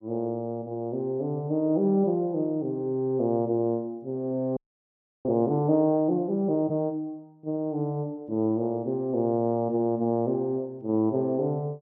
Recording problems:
audio freezing; at 4.5 s for 0.5 s

